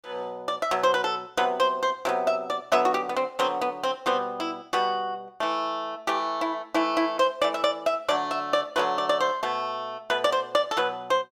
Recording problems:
none

